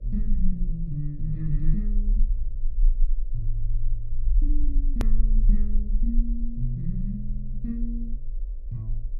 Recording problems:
hum; 50 Hz, harmonics up to 600 Hz, SNR 28 dB
low-frequency rumble; below 36 Hz, strongest tone 18 Hz, SNR -5 dB
edit click; at 5 s

